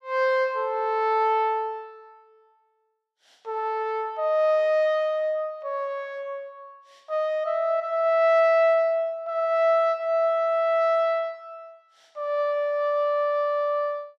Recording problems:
none

